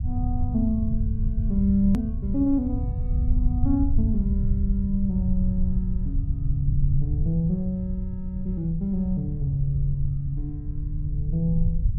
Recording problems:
low-frequency rumble; below 92 Hz, SNR 1 dB
edit click; at 2 s

